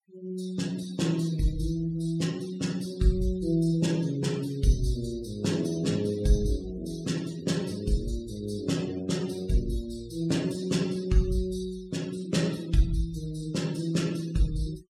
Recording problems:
denoising artefacts; signal-to-artefact ratio 19 dB

